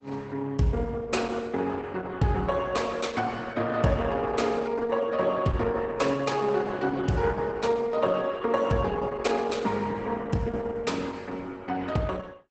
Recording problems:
lossy compression; Opus, log-spectral distance 3 dB, nothing above 8 kHz

